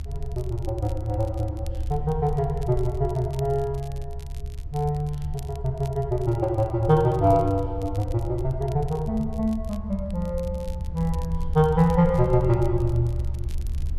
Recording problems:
low-frequency rumble; below 74 Hz, SNR 8 dB
crackling; vinyl, SNR 27 dB

